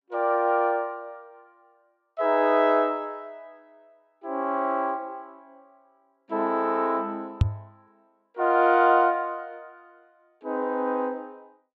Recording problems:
microphone bump; at 7.5 s; peak +7 dB vs average level

